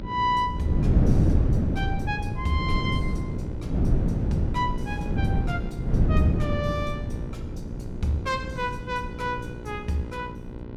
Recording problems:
hum; 60 Hz, harmonics up to 1.5 kHz, SNR 11 dB
wind noise; below 190 Hz, SNR -3 dB

